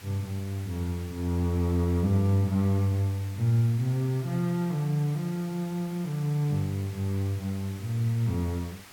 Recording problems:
background hiss; SNR 20 dB

